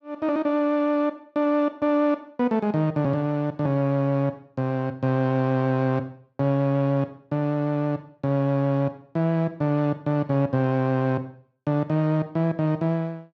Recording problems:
none

